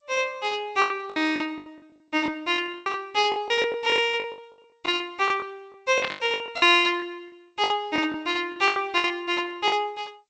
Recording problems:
codec artefacts; G.722, log-spectral distance 2 dB, nothing above 8 kHz
packet loss; 16% of the sound replaced, filled with the last packet
static burst; at 6 s; peak 0 dB vs average level

